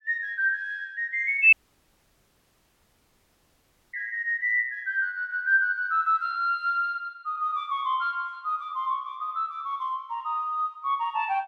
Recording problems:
audio cutting out; at 1.5 s for 2.5 s

